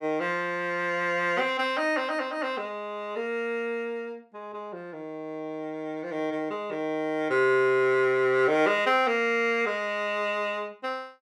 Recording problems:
none

